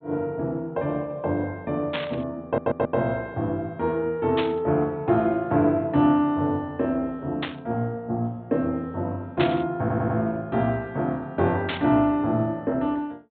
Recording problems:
low-pass filter; nothing above 4 kHz
static burst; 5 times, first at 2 s; peak +1 dB vs average level
audio stuttering; at 2.5 s and at 10 s

